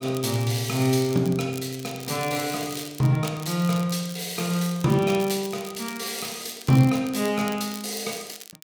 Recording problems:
crackle; vinyl, SNR 15 dB

